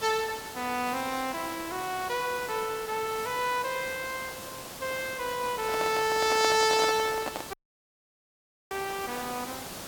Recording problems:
background hiss; slope -3 dB per octave, SNR 10 dB
microphone handling noise; from 5.5 to 7.5 s; peak +1 dB vs average level
dropout; at 7.5 s for 1 s

